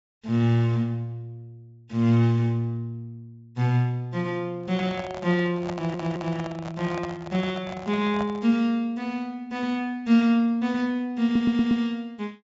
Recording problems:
treble missing; nothing above 8 kHz
handling noise; from 4.5 to 8.5 s; peak -4 dB vs average level
audio stuttering; at 5.5 s and at 11 s

